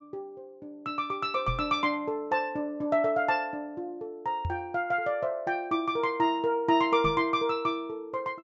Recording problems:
treble cut off; nothing above 8 kHz
knock on the microphone; at 1.5 s, at 4.5 s and at 7 s; peak -1 dB vs average level

